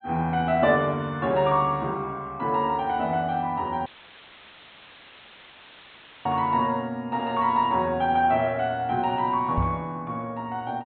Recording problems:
low-pass filter; nothing above 4 kHz
audio cutting out; at 4 s for 2.5 s; filled with static
knock on the microphone; at 9.5 s; peak +1 dB vs average level

